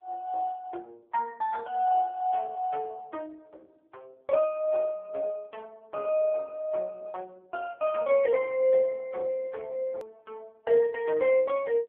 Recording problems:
telephone audio; 300 Hz to 3.5 kHz, AMR-NB
click at an edit; at 10 s

